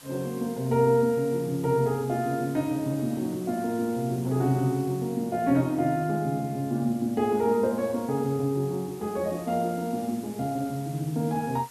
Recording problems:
hiss; SNR 21 dB

